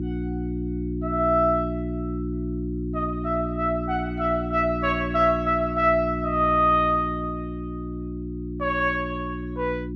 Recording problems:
hum; 60 Hz, harmonics up to 360 Hz, SNR 6 dB

